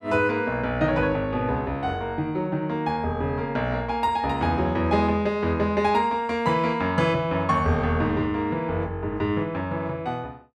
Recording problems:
none

